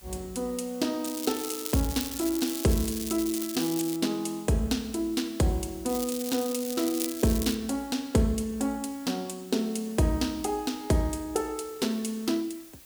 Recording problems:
hiss; slope 0 dB per octave, SNR 20 dB
crackle; from 1 to 4 s and from 6 to 7.5 s; loose cable, SNR 7 dB

